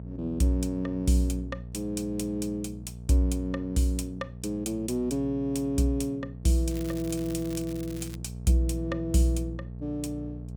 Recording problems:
hum; 60 Hz, harmonics up to 660 Hz, SNR 11 dB
crackling; from 6.5 to 8 s; loose cable, SNR 17 dB

